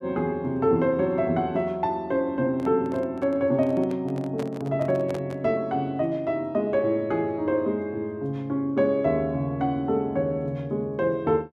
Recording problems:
handling noise; from 2.5 to 5.5 s; peak -6 dB vs average level

